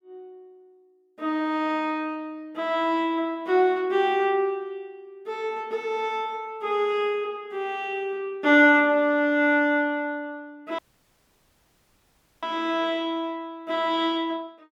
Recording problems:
dropout; at 11 s for 1.5 s

